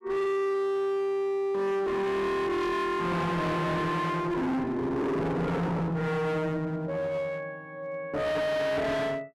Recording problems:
distortion; hard clipping, uneven, signal-to-distortion ratio 6 dB

